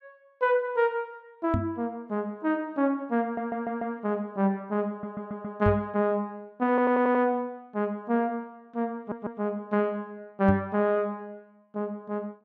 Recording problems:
microphone bump; at 1.5 s, at 5.5 s and at 10 s; peak +4 dB vs average level
audio stuttering; 4 times, first at 3 s

